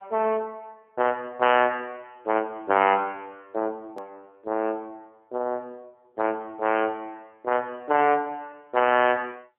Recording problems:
telephone audio; 260 Hz to 3.1 kHz, AMR-NB
hard cut with a click; at 4 s

